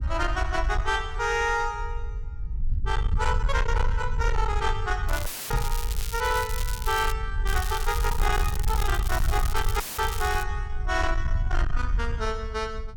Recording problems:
distorted audio; soft clipping, signal-to-distortion ratio 11 dB
low-frequency rumble; below 66 Hz, SNR 2 dB
crackling; from 5 to 7 s and from 7.5 to 10 s; loose cable, SNR 8 dB
dropout; at 5.5 s and at 10 s; filled with static
microphone bump; at 5.5 s; peak +1 dB vs average level

